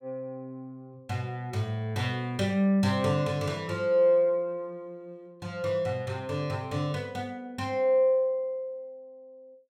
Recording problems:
none

